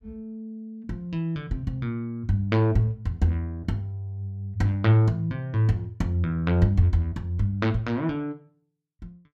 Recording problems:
none

